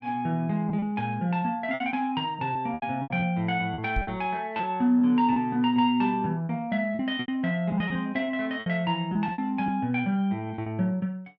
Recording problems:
lost packets; 9% of the sound replaced, filled with repeated pitch periods
microphone thump; at 4 s; peak 0 dB vs average level

